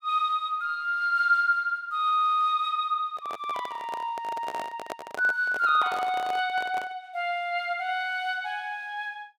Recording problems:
microphone handling noise; from 3 to 7 s; peak -4 dB vs average level

